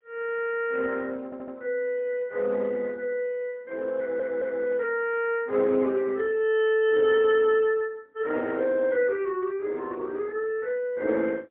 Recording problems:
phone line; 240 Hz to 3.5 kHz, AMR-NB, then MP3
audio stuttering; at 1.5 s and at 4 s

